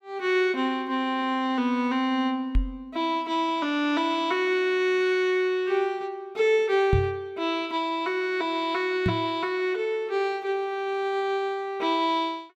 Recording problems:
microphone bump; at 2.5 s, at 7 s and at 9 s; peak +5 dB vs average level

